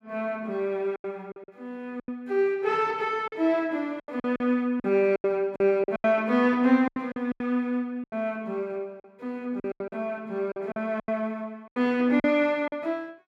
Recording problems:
lost packets; 12% of the sound replaced, filled with silence

